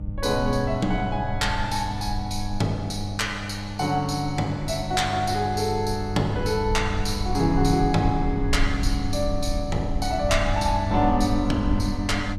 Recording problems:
hum; 50 Hz, harmonics up to 900 Hz, SNR 7 dB
rumble; below 66 Hz, SNR 7 dB

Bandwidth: 14.5 kHz